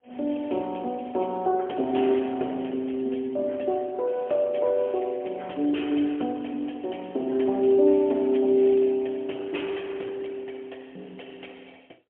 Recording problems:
phone line; 220 Hz to 3.3 kHz, AMR-NB, then MP3

